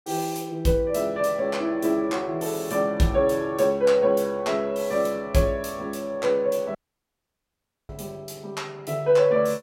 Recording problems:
audio cutting out; at 7 s for 1 s

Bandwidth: 16 kHz